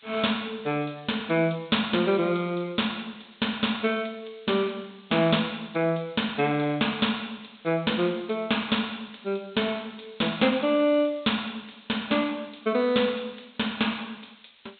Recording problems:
treble missing; nothing above 4 kHz
background hiss; SNR 27 dB

